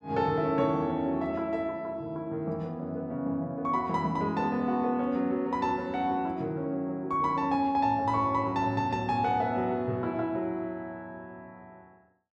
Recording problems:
none

